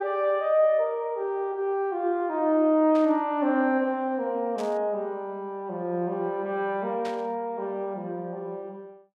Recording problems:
burst of static; at 3 s, at 4.5 s and at 7 s; peak -10 dB vs average level

